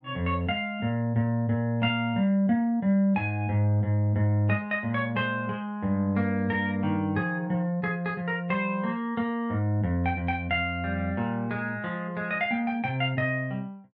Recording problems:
none

